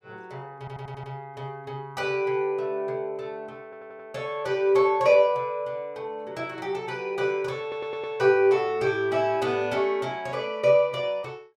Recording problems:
audio stuttering; at 0.5 s, at 3.5 s and at 7.5 s

